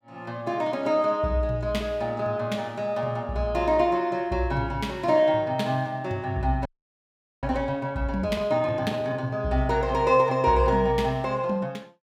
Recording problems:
audio freezing; at 6.5 s for 1 s

